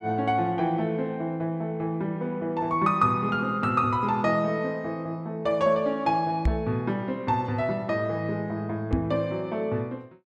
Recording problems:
microphone thump; at 6.5 s and at 9 s; peak +5 dB vs average level

